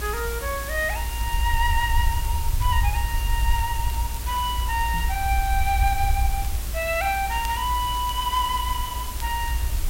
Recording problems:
hiss; slope -2 dB per octave, SNR 8 dB
rumble; below 70 Hz, SNR 2 dB
crackle; vinyl, SNR 23 dB
microphone thump; at 5 s; peak -1 dB vs average level

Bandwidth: 16 kHz